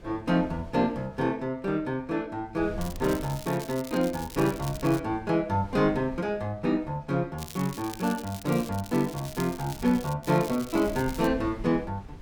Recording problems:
wind on the microphone; below 140 Hz, SNR 18 dB
crackle; from 3 to 5 s, from 7.5 to 10 s and from 10 to 11 s; loose cable, SNR 15 dB

